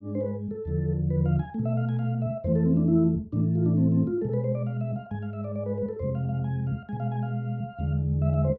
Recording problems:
none

